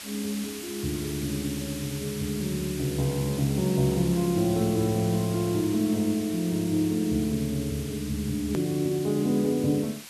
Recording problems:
hiss; slope +2 dB per octave, SNR 12 dB
edit click; at 8.5 s

